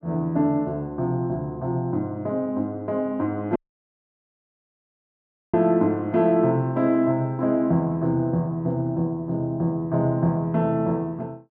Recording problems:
audio cutting out; at 3.5 s for 2 s

